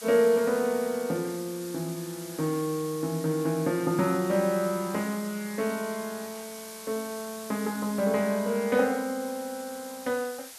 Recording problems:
background hiss; slope +1 dB per octave, SNR 14 dB

